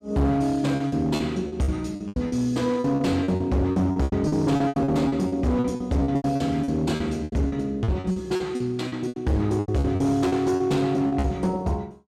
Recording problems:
distortion; hard clipping, signal-to-distortion ratio 11 dB
lost packets; 17% of the sound replaced, filled with repeated pitch periods

